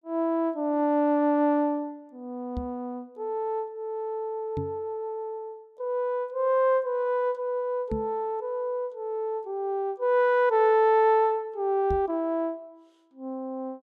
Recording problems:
microphone bump; 4 times, first at 2.5 s; peak -2 dB vs average level

